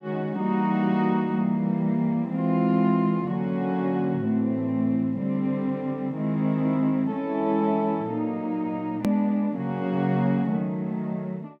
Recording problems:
click at an edit; at 9 s

